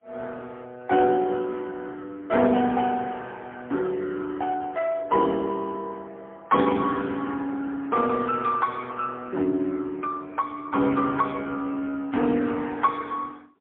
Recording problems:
telephone audio; 150 Hz to 3 kHz, AMR-NB, then MP3

